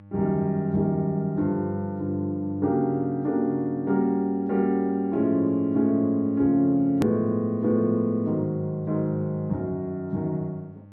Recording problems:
hum; 50 Hz, harmonics up to 900 Hz, SNR 23 dB
click at an edit; at 7 s

